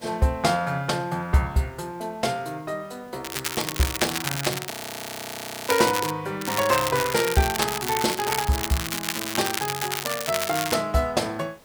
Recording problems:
background hiss; slope -5 dB per octave, SNR 27 dB
crackling; from 3 to 6 s and from 6.5 to 11 s; loose cable, SNR 3 dB
audio freezing; at 4.5 s for 1 s

